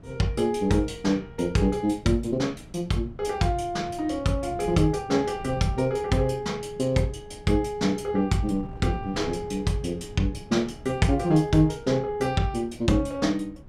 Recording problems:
wind noise; below 190 Hz, SNR 19 dB

